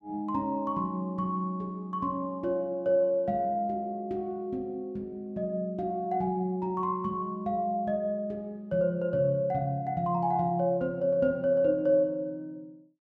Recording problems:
none

